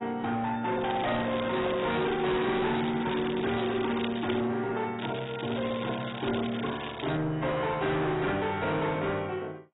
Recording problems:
lossy compression; AAC, log-spectral distance 10 dB, nothing above 3.8 kHz
distortion; hard clipping, uneven, signal-to-distortion ratio 8 dB
crackling; from 1 to 4.5 s and from 5 to 7 s; loose cable, SNR 13 dB

